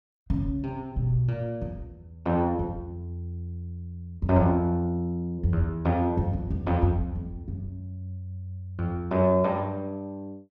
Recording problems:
none

